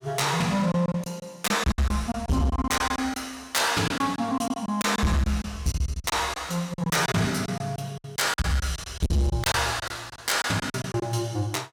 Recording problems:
distorted audio; soft clipping, signal-to-distortion ratio 10 dB
lost packets; 13% of the sound replaced, filled with silence

